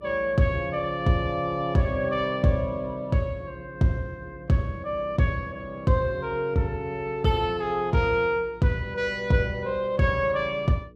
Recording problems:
electrical hum; 60 Hz, harmonics up to 480 Hz, SNR 26 dB

